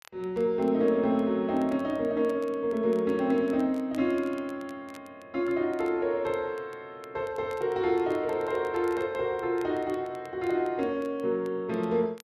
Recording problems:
crackle; vinyl, SNR 28 dB

